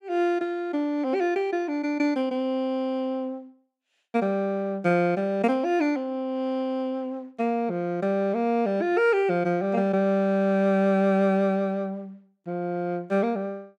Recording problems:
none

